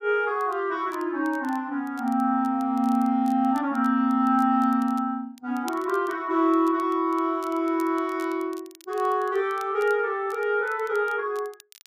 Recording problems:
crackle; vinyl, SNR 27 dB

